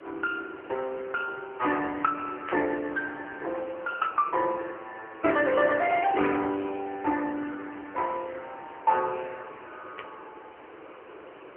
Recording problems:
telephone audio; 260 Hz to 3.1 kHz, AMR-NB
background hiss; SNR 19 dB
static burst; at 2.5 s, at 4 s and at 10 s; peak -5 dB vs average level

